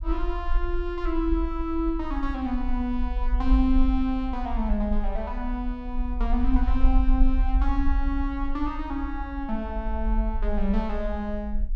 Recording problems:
rumble; below 48 Hz, SNR 1 dB

